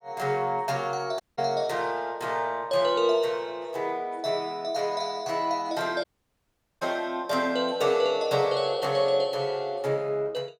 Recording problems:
audio cutting out; at 1 s and at 6 s for 1 s

